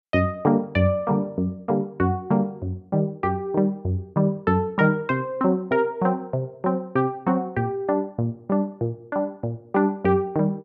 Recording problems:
none

